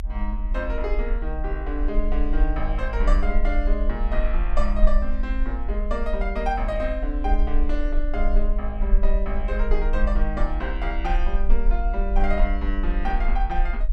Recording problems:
rumble; below 40 Hz, SNR -3 dB

